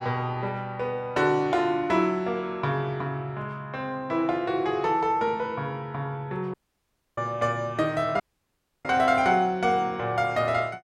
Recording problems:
audio cutting out; at 6.5 s for 0.5 s and at 8 s for 0.5 s

